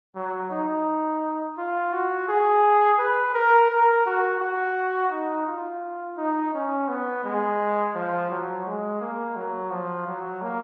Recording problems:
codec artefacts; Vorbis, log-spectral distance 2 dB

